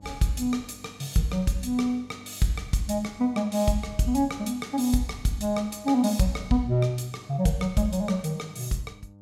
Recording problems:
mains hum; 50 Hz, harmonics up to 900 Hz, SNR 25 dB

